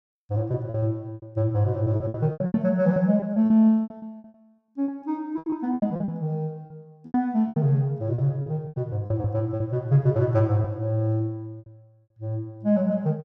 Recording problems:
packet loss; 14% of the sound replaced, filled with repeated pitch periods

